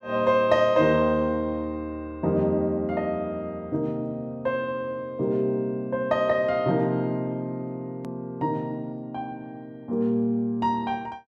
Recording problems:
hard cut with a click; at 8 s

